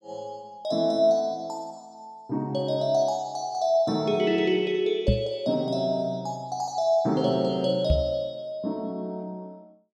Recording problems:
microphone bump; at 5 s and at 8 s; peak +7 dB vs average level

